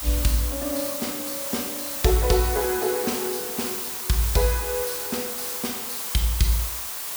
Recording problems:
background hiss; SNR 2 dB

